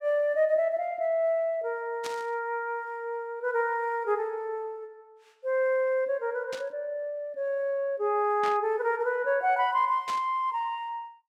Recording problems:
burst of static; 4 times, first at 2 s; peak -6 dB vs average level

